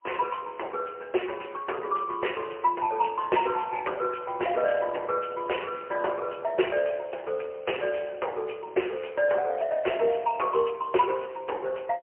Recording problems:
phone line; 320 Hz to 3 kHz, AMR-NB, then MP3

